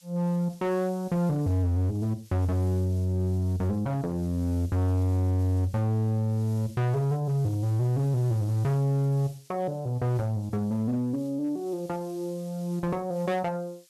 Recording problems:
distortion; hard clipping, signal-to-distortion ratio 10 dB
hiss; slope +5 dB per octave, SNR 26 dB

